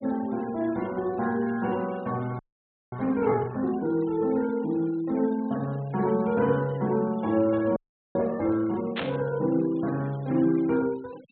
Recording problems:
treble cut off; nothing above 4 kHz
noise reduction artefacts; signal-to-artefact ratio 24 dB
audio freezing; at 2.5 s for 0.5 s and at 8 s
burst of static; at 9 s; peak -1 dB vs average level

